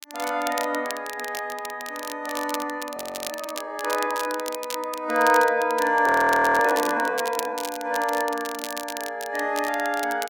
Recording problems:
crackling; vinyl, SNR 11 dB
audio freezing; at 3 s and at 6 s for 0.5 s

